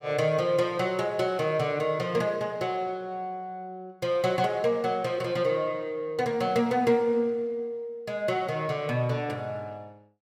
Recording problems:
none

